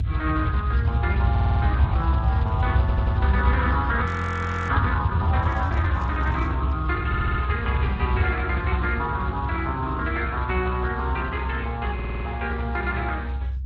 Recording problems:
lossy compression; Speex, log-spectral distance 2 dB, nothing above 8 kHz
low-frequency rumble; below 96 Hz, strongest tone 64 Hz, SNR -1 dB
stutter; 4 times, first at 1.5 s
frozen audio; at 4 s for 0.5 s
handling noise; from 5.5 to 6.5 s; peak -10 dB vs average level

